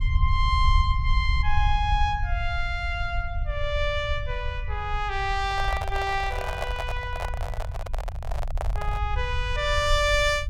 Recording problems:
rumble; below 74 Hz, SNR 3 dB
microphone handling noise; from 5.5 to 9 s; peak 0 dB vs average level

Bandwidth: 17 kHz